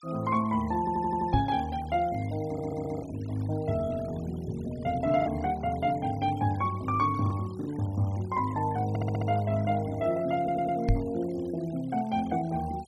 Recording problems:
denoising artefacts; signal-to-artefact ratio 21 dB
packet loss; 1.4% of the sound replaced, filled with the last packet
audio stuttering; 4 times, first at 1 s
knock on the microphone; at 1.5 s and at 11 s; peak +7 dB vs average level

